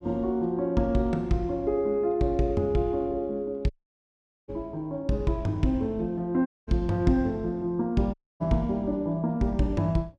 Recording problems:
dropout; at 3.5 s for 1 s, at 6.5 s and at 8 s

